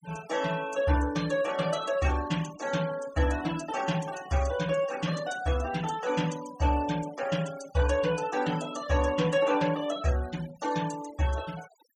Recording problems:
denoising artefacts; signal-to-artefact ratio 16 dB

